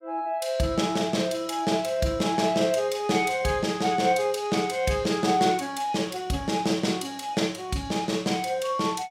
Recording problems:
none

